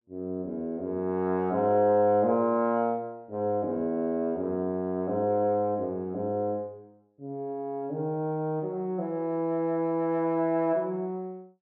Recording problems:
none

